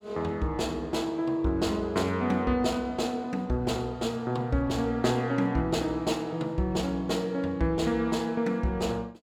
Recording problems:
none

